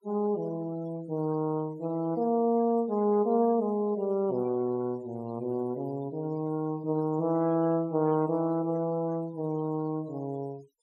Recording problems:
denoising artefacts; signal-to-artefact ratio 25 dB

